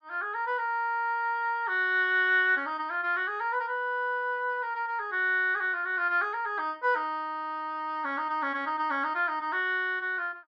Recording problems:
none

